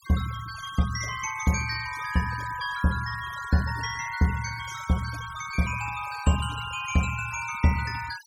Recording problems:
denoising artefacts; signal-to-artefact ratio 14 dB

